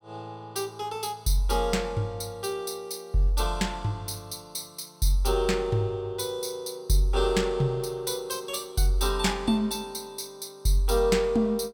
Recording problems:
none

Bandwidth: 17 kHz